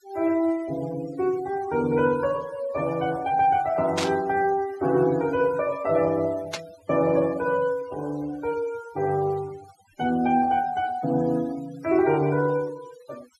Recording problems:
denoising artefacts; signal-to-artefact ratio 21 dB
static burst; at 4 s and at 6.5 s; peak 0 dB vs average level

